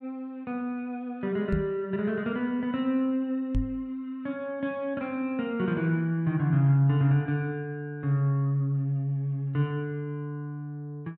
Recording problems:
microphone thump; at 1.5 s and at 3.5 s; peak +3 dB vs average level

